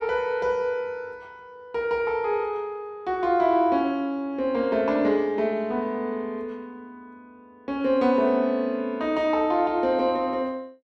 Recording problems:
none

